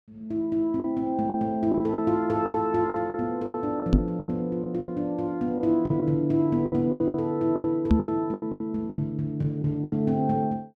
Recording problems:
lost packets; 13% of the sound replaced, filled with the last packet
knock on the microphone; at 4 s and at 8 s; peak +9 dB vs average level

